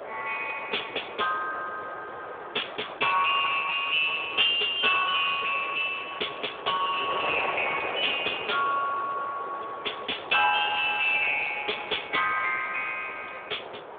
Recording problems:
phone line; 320 Hz to 3.5 kHz, Speex
wind noise; below 1.2 kHz, SNR 11 dB

